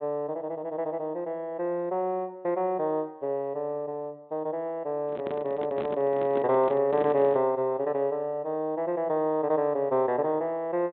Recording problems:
low-pass filter; nothing above 4 kHz
microphone handling noise; from 5 to 7.5 s; peak -3 dB vs average level

